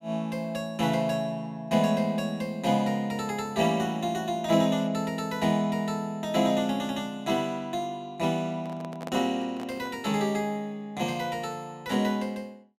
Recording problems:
handling noise; from 8.5 to 10 s; peak -6 dB vs average level

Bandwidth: 15.5 kHz